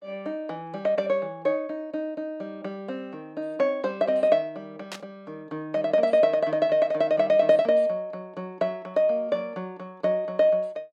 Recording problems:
static burst; at 5 s; peak -7 dB vs average level

